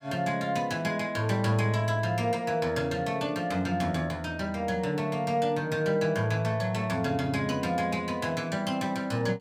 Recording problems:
none

